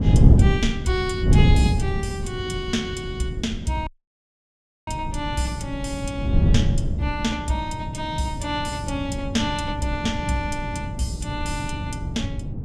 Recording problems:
wind noise; below 160 Hz, SNR -3 dB
dropout; at 4 s for 1 s

